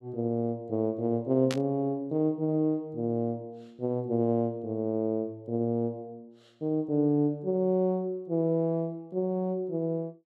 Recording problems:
burst of static; at 1.5 s; peak -2 dB vs average level

